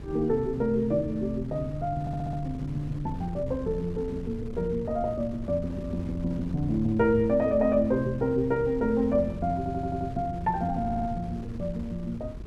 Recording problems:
wind on the microphone; below 160 Hz, SNR 12 dB
stutter; at 2 s, at 9.5 s and at 11 s

